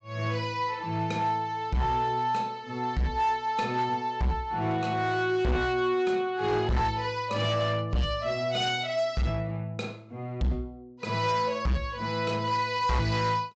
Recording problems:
treble missing; nothing above 8 kHz
distorted audio; hard clipping, signal-to-distortion ratio 11 dB

